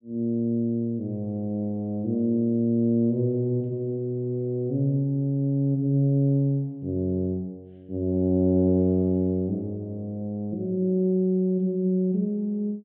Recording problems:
low-pass filter; nothing above 4 kHz

